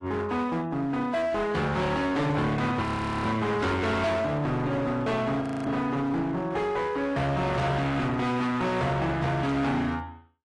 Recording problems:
codec artefacts; AAC, log-spectral distance 2 dB, nothing above 10.7 kHz
distortion; hard clipping, signal-to-distortion ratio 7 dB
audio freezing; at 3 s and at 5.5 s

